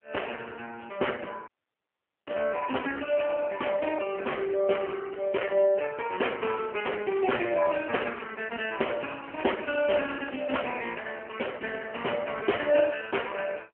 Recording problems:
telephone audio; 240 Hz to 3.1 kHz, AMR-NB
audio cutting out; at 1.5 s for 1 s

